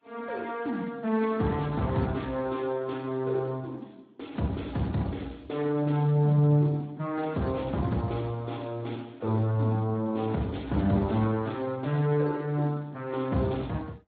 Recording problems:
codec artefacts; AAC, then Speex, log-spectral distance 4 dB

